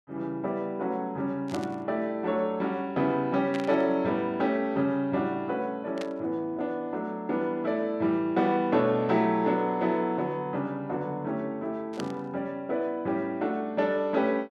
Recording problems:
static burst; 4 times, first at 1.5 s; peak -6 dB vs average level

